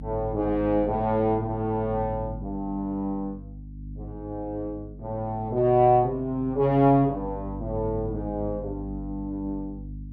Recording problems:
hum; 50 Hz, harmonics up to 300 Hz, SNR 13 dB

